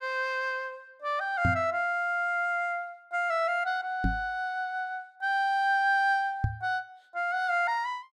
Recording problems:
knock on the microphone; at 1.5 s, at 4 s and at 6.5 s; peak +5 dB vs average level

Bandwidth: 14 kHz